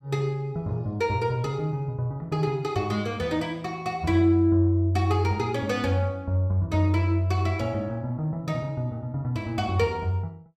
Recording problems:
none

